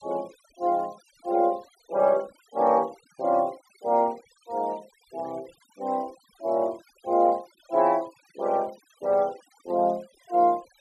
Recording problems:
denoising artefacts; signal-to-artefact ratio 28 dB

